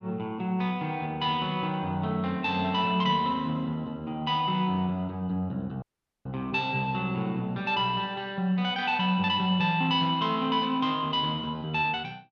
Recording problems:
audio cutting out; at 6 s

